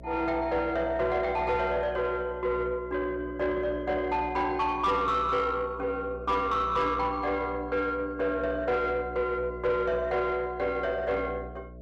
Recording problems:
distortion; soft clipping, signal-to-distortion ratio 11 dB
electrical hum; 60 Hz, harmonics up to 660 Hz, SNR 16 dB

